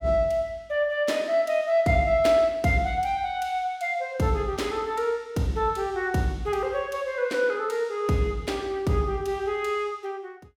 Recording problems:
none

